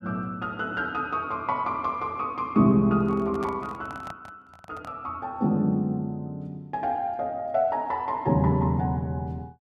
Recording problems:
handling noise; from 3 to 5 s; peak -7 dB vs average level

